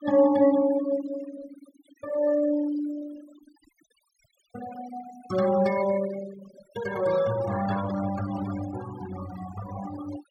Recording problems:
denoising artefacts; signal-to-artefact ratio 15 dB

